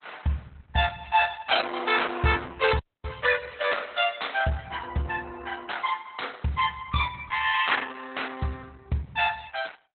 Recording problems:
codec artefacts; Opus, log-spectral distance 6 dB, nothing above 4 kHz
audio cutting out; at 3 s

